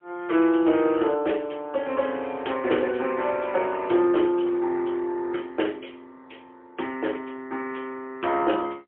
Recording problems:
telephone audio; 280 Hz to 3.3 kHz, AMR-NB, then MP3

